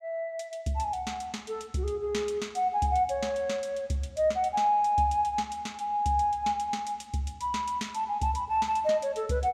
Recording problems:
none

